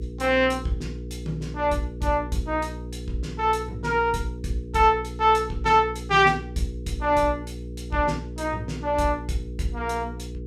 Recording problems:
hum; 60 Hz, harmonics up to 480 Hz, SNR 11 dB

